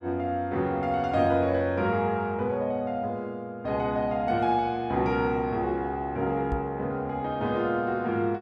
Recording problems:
microphone thump; at 6.5 s; peak -1 dB vs average level

